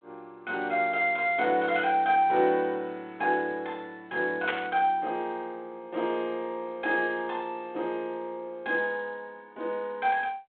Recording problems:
phone line; 300 Hz to 3.7 kHz, G.726
burst of static; at 4.5 s; peak +1 dB vs average level

